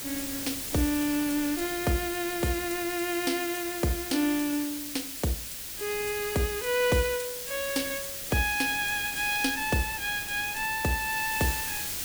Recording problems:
background hiss; SNR 5 dB
wind noise; below 740 Hz, SNR 21 dB

